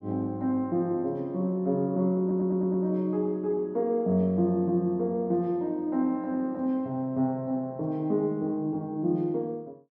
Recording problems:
audio stuttering; at 2 s

